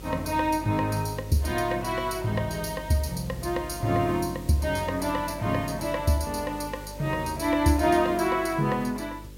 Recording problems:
mains hum; 50 Hz, harmonics up to 550 Hz, SNR 16 dB
hiss; slope -1 dB per octave, SNR 22 dB

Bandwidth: 16 kHz